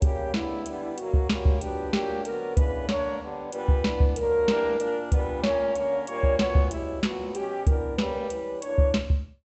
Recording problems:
treble missing; nothing above 8 kHz

